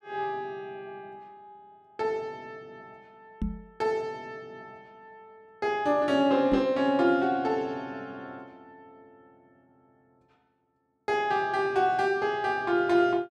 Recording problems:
microphone thump; at 3.5 s and at 6.5 s; peak 0 dB vs average level

